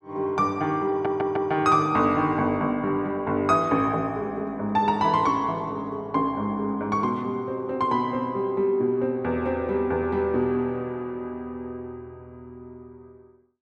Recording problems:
audio stuttering; at 1 s

